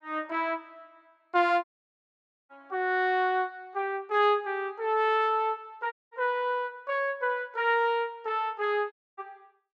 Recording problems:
dropout; at 1.5 s for 1 s, at 6 s and at 9 s

